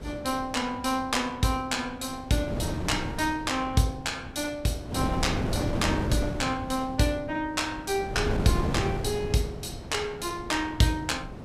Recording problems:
wind noise; below 380 Hz, SNR 5 dB

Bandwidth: 14.5 kHz